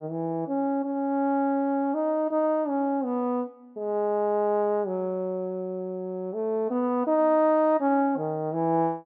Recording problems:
none

